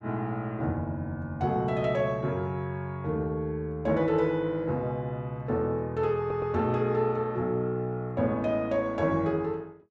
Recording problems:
stutter; at 6 s

